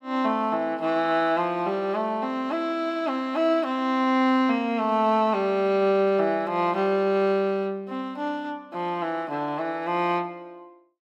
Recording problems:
none

